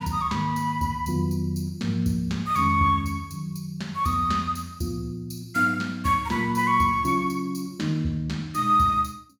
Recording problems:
none

